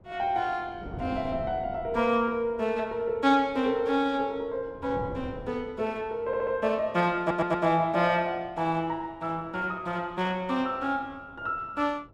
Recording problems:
wind noise; below 360 Hz, SNR 18 dB
audio stuttering; at 6.5 s and at 7 s

